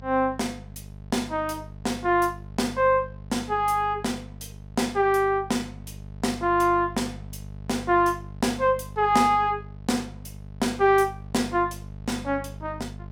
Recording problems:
hum; 50 Hz, harmonics up to 850 Hz, SNR 16 dB

